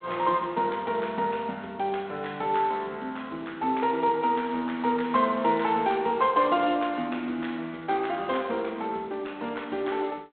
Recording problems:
telephone audio; 190 Hz to 3.9 kHz, G.726

